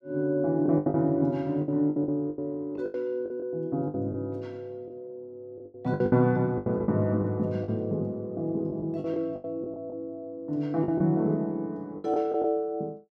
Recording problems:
packet loss; 11% of the sound replaced, filled with the last packet

